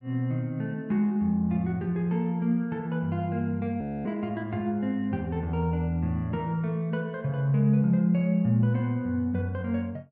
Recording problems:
audio freezing; at 4 s

